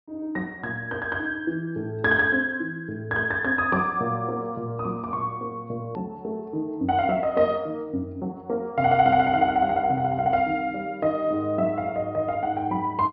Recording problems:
low-pass filter; nothing above 5.5 kHz
hard cut with a click; at 6 s

